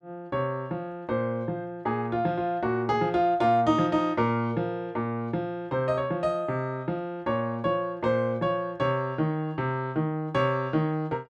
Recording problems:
none

